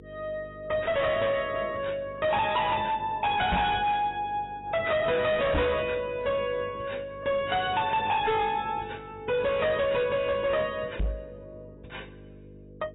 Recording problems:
lossy compression; AAC, log-spectral distance 3 dB, nothing above 3.8 kHz
distorted audio; hard clipping, signal-to-distortion ratio 7 dB
electrical hum; 50 Hz, harmonics up to 500 Hz, SNR 21 dB
knock on the microphone; at 3.5 s, at 5.5 s and at 11 s; peak +3 dB vs average level

